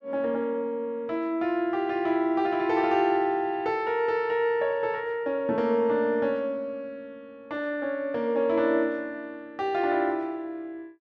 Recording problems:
none

